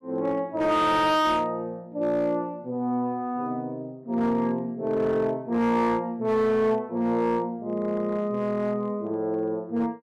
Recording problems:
distortion; hard clipping, signal-to-distortion ratio 12 dB

